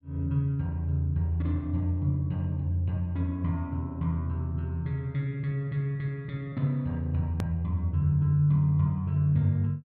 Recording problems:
click at an edit; at 7.5 s

